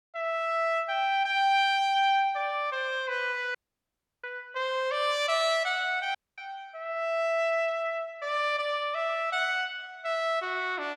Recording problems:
audio cutting out; at 3.5 s for 0.5 s and at 6 s

